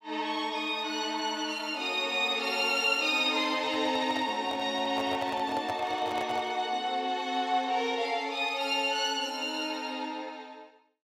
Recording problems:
handling noise; from 3.5 to 6.5 s; peak -5 dB vs average level

